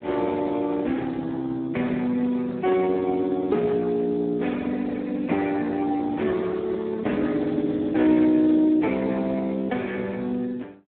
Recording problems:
telephone audio; 220 Hz to 2.2 kHz, Speex

